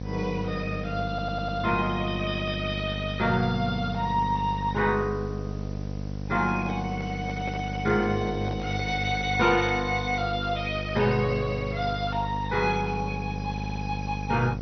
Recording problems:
codec artefacts; MP2, log-spectral distance 6 dB, nothing above 5.8 kHz
hum; 50 Hz, harmonics up to 750 Hz, SNR 6 dB
background hiss; slope +1 dB per octave, SNR 28 dB
audio stuttering; at 1 s and at 14 s
handling noise; from 6.5 to 9.5 s; peak -7 dB vs average level

